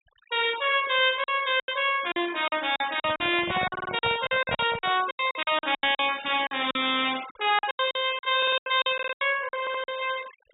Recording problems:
treble missing; nothing above 4 kHz
denoising artefacts; signal-to-artefact ratio 16 dB
packet loss; 16% of the sound replaced, filled with silence
handling noise; from 3 to 5 s; peak -2 dB vs average level
stutter; 4 times, first at 3.5 s

